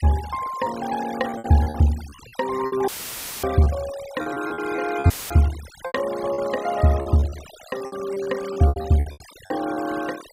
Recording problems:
denoising artefacts; signal-to-artefact ratio 15 dB
lost packets; 12% of the sound replaced, filled with repeated pitch periods
audio cutting out; at 3 s for 0.5 s and at 5 s; filled with static

